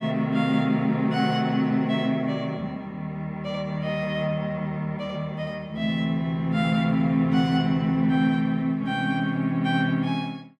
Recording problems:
none

